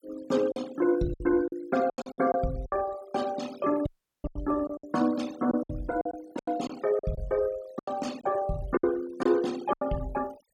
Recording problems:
denoising artefacts; signal-to-artefact ratio 19 dB
lost packets; 11% of the sound replaced, filled with silence
dropout; at 4 s

